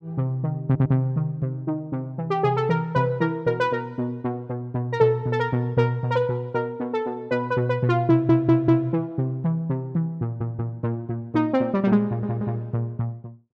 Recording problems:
audio stuttering; 4 times, first at 0.5 s

